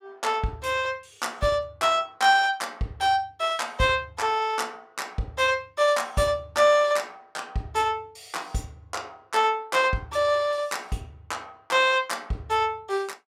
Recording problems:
none

